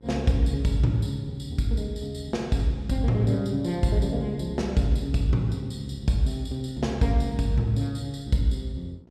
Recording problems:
hum; 60 Hz, harmonics up to 960 Hz, SNR 29 dB

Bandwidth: 14.5 kHz